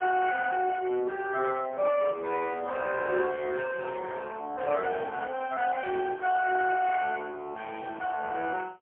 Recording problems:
phone line; 260 Hz to 2.9 kHz, AMR-NB, then MP3

